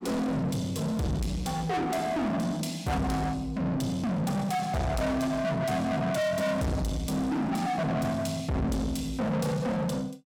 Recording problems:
distorted audio; soft clipping, signal-to-distortion ratio 6 dB

